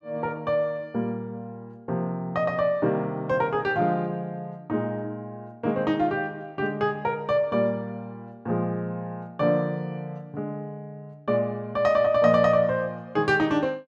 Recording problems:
none

